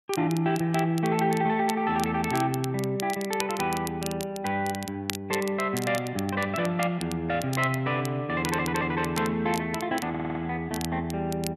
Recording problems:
crackling; vinyl, SNR 12 dB
audio stuttering; at 8.5 s and at 10 s

